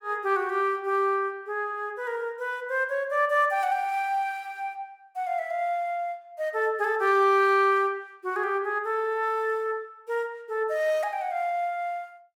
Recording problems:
none

